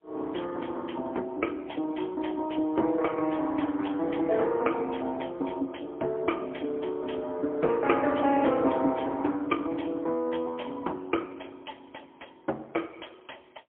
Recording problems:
telephone audio; 240 Hz to 3.3 kHz, AMR-NB, then MP3

